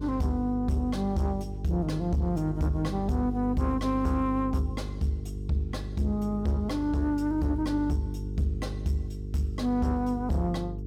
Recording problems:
distortion; soft clipping, signal-to-distortion ratio 10 dB
hum; 50 Hz, harmonics up to 450 Hz, SNR 7 dB

